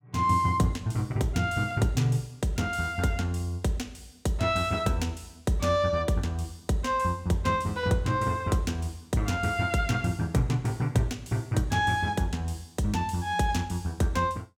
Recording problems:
none

